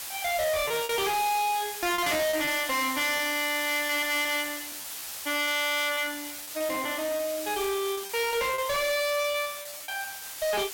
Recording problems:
distorted audio; hard clipping, uneven, signal-to-distortion ratio 6 dB
hiss; slope +2 dB per octave, SNR 8 dB
packet loss; 10% of the sound replaced, filled with repeated pitch periods

